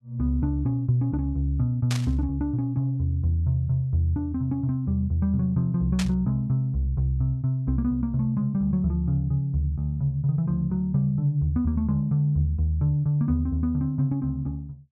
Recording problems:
burst of static; at 2 s and at 6 s; peak -3 dB vs average level

